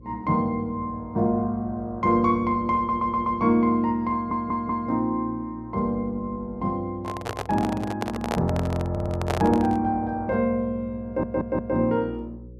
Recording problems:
hum; 60 Hz, harmonics up to 540 Hz, SNR 20 dB
stutter; 4 times, first at 3 s
handling noise; from 7 to 10 s; peak +2 dB vs average level

